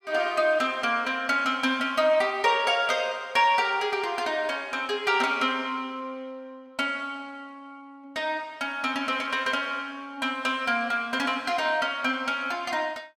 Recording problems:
none

